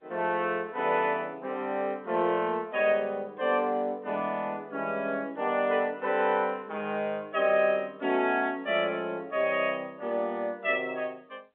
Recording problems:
phone line; 220 Hz to 3.6 kHz, G.711

